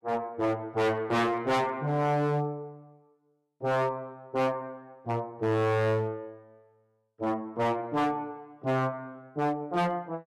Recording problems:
distorted audio; hard clipping, signal-to-distortion ratio 7 dB

